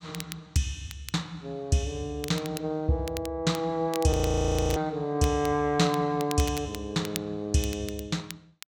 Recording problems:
crackling; vinyl, SNR 14 dB
frozen audio; at 4 s for 0.5 s

